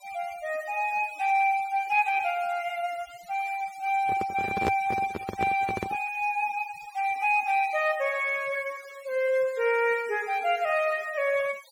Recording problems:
denoising artefacts; signal-to-artefact ratio 21 dB
microphone handling noise; from 4 to 6 s; peak +3 dB vs average level

